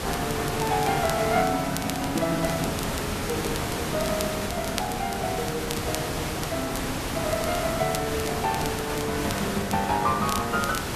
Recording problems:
hiss; slope -4 dB per octave, SNR 2 dB
crackle; vinyl, SNR 11 dB

